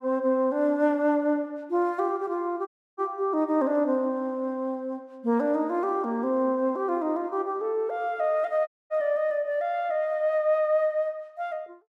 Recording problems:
dropout; at 2.5 s and at 8.5 s

